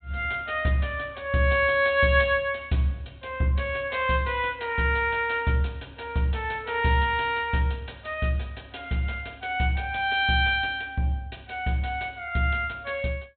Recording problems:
treble missing; nothing above 4 kHz

